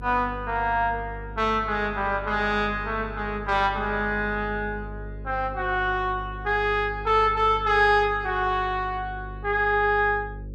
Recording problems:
hum; 50 Hz, harmonics up to 550 Hz, SNR 14 dB

